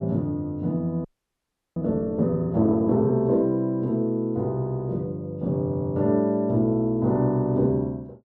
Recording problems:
audio freezing; at 1 s for 0.5 s

